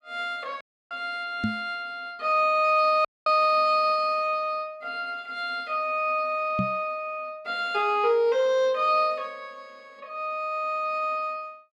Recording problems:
dropout; at 0.5 s and at 3 s
knock on the microphone; at 1.5 s and at 6.5 s; peak +1 dB vs average level

